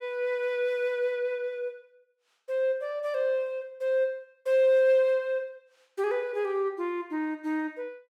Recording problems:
none

